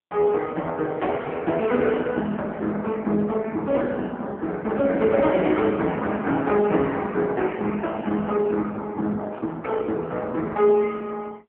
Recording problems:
phone line; 130 Hz to 3.3 kHz, AMR-NB

